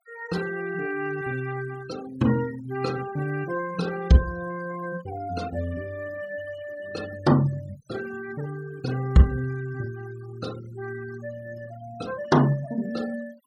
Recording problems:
denoising artefacts; signal-to-artefact ratio 19 dB

